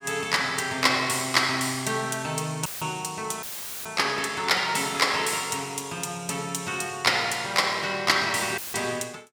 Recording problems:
audio cutting out; at 2.5 s, at 3.5 s and at 8.5 s; filled with static

